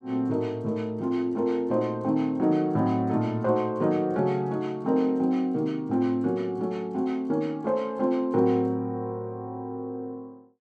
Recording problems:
none

